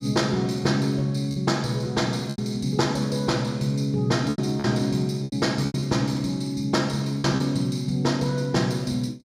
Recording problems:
packet loss; 5% of the sound replaced, filled with repeated pitch periods

